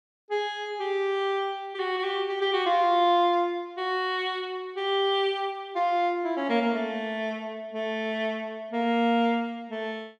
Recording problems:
none

